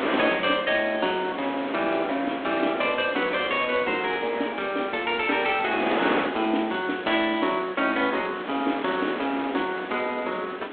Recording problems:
phone line; 220 Hz to 3.9 kHz, G.726
wind noise; below 1.9 kHz, SNR 7 dB

